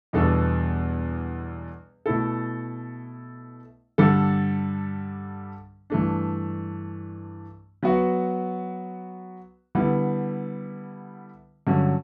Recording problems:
none

